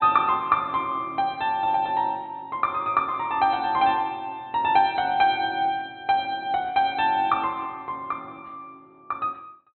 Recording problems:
low-pass filter; nothing above 4.1 kHz

